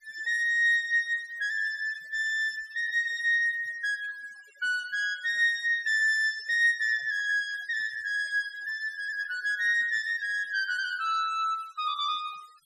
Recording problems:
denoising artefacts; signal-to-artefact ratio 22 dB

